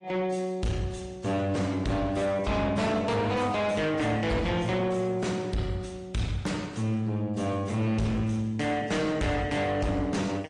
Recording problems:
lossy compression; MP3, then AAC, log-spectral distance 3 dB
distortion; soft clipping, signal-to-distortion ratio 8 dB

